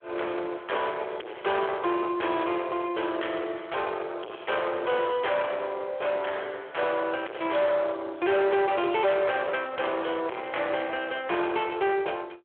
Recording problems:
phone line; 300 Hz to 3.4 kHz, Speex
distortion; soft clipping, signal-to-distortion ratio 7 dB

